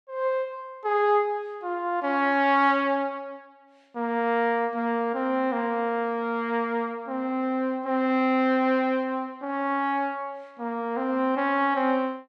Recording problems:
none

